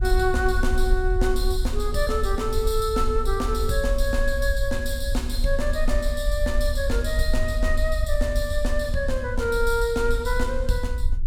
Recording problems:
low-frequency rumble; below 56 Hz, SNR 2 dB

